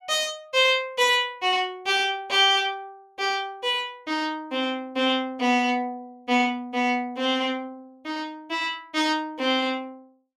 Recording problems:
none

